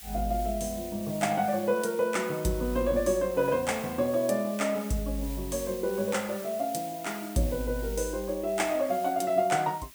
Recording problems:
hiss; slope +2 dB per octave, SNR 15 dB

